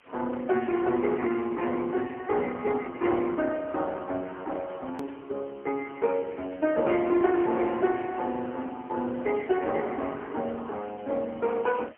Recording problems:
phone line; 220 Hz to 3.1 kHz, AMR-NB, then MP3
hiss; SNR 29 dB
hard cut with a click; at 5 s

